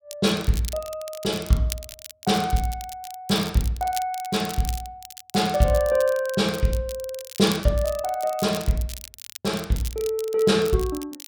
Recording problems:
crackling; vinyl, SNR 14 dB

